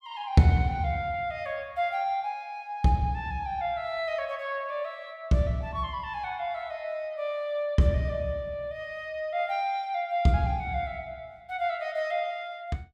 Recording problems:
none

